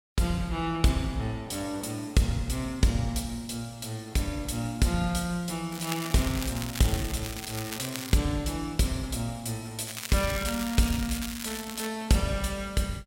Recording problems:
crackling; from 5.5 to 8 s and from 10 to 12 s; loose cable, SNR 8 dB

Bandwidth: 16 kHz